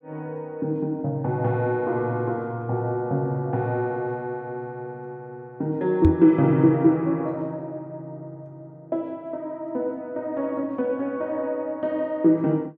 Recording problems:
knock on the microphone; at 6 s; peak +8 dB vs average level

